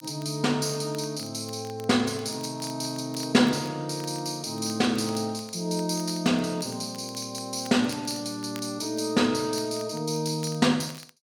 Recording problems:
crackle; vinyl, SNR 23 dB

